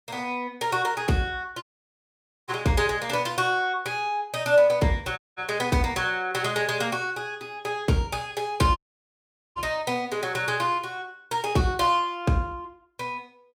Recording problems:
dropout; at 1.5 s for 1 s, at 5 s and at 9 s for 1 s

